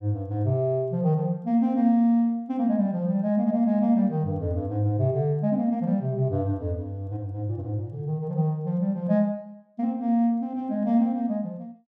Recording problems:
none

